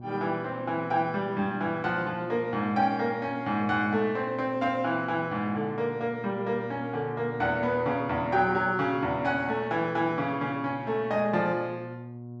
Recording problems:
hum; 60 Hz, harmonics up to 720 Hz, SNR 14 dB

